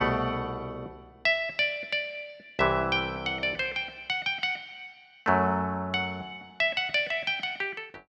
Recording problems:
none

